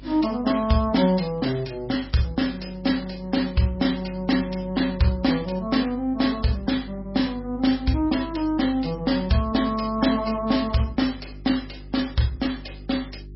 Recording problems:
lossy compression; MP3, log-spectral distance 5 dB, nothing above 5.3 kHz
electrical hum; 50 Hz, harmonics up to 400 Hz, SNR 18 dB

